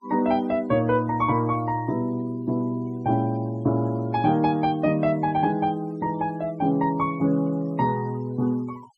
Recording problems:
noise reduction artefacts; signal-to-artefact ratio 27 dB

